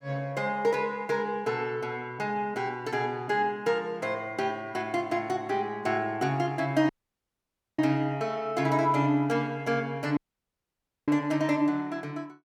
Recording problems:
audio cutting out; at 7 s for 1 s and at 10 s for 1 s

